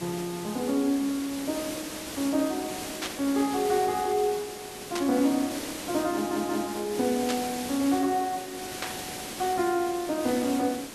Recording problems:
hiss; slope -3 dB per octave, SNR 9 dB
static burst; 4 times, first at 3 s; peak 0 dB vs average level
stutter; at 6 s

